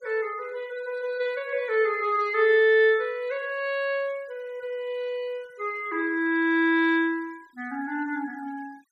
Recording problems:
denoising artefacts; signal-to-artefact ratio 28 dB

